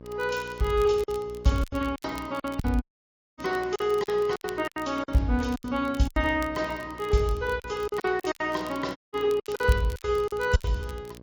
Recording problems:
codec artefacts; MP3, log-spectral distance 2 dB
hum; 60 Hz, harmonics up to 1.1 kHz, SNR 20 dB
crackling; vinyl, SNR 22 dB
packet loss; 12% of the sound replaced, filled with silence
audio cutting out; at 3 s for 0.5 s and at 9 s

